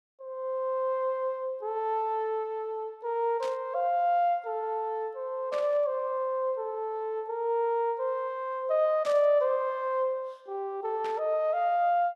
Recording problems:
burst of static; 4 times, first at 3.5 s; peak -10 dB vs average level

